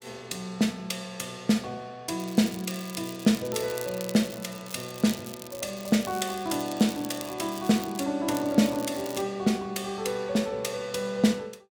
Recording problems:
crackling; from 2 to 8 s and at 8.5 s; loose cable, SNR 14 dB

